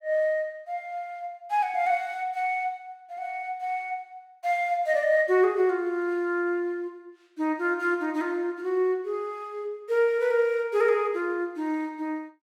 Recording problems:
none

